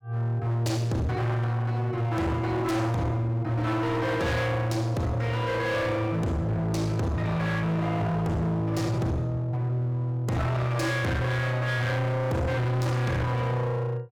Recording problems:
distorted audio; hard clipping, uneven, signal-to-distortion ratio 6 dB

